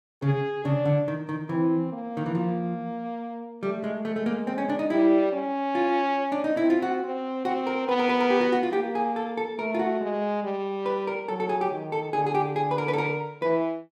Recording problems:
none

